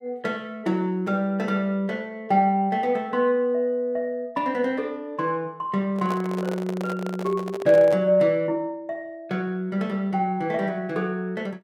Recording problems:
handling noise; from 6 to 8 s; peak -5 dB vs average level

